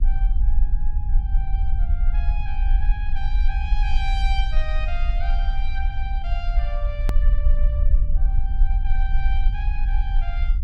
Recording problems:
low-frequency rumble; below 46 Hz, SNR -12 dB
hard cut with a click; at 7 s

